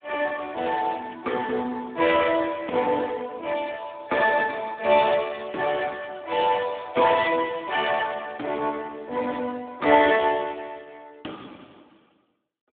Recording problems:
telephone audio; 260 Hz to 2.9 kHz, Speex

